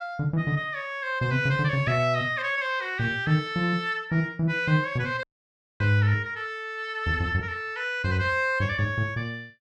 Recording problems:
dropout; at 5 s for 0.5 s

